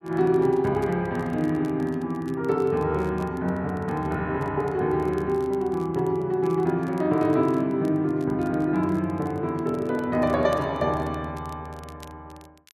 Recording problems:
crackling; vinyl, SNR 29 dB

